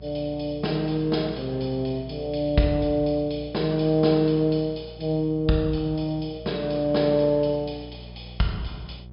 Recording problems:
treble cut off; nothing above 5.5 kHz
electrical hum; 60 Hz, harmonics up to 600 Hz, SNR 18 dB

